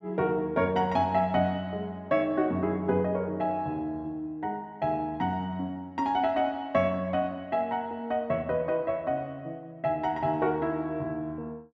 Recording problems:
none

